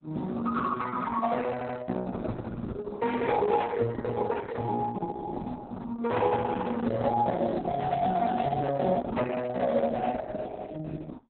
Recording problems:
lossy codec; Speex, then Opus, log-spectral distance 4 dB, nothing above 3.9 kHz
stutter; at 1.5 s

